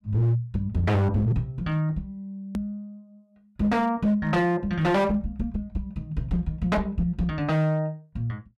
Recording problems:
distortion; hard clipping, signal-to-distortion ratio 10 dB
click at an edit; at 2.5 s

